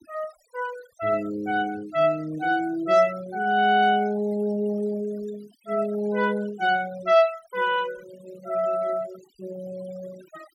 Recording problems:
noise reduction artefacts; signal-to-artefact ratio 21 dB

